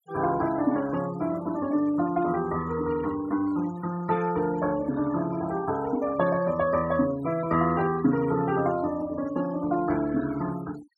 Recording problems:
denoising artefacts; signal-to-artefact ratio 17 dB

